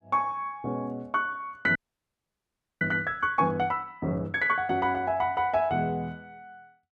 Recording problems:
frozen audio; at 2 s for 1 s

